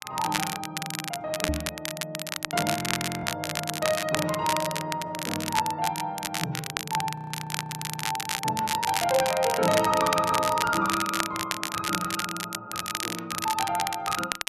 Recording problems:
crackling; vinyl, SNR 3 dB
microphone thump; at 1.5 s; peak +2 dB vs average level
frozen audio; at 3 s and at 7 s for 1 s

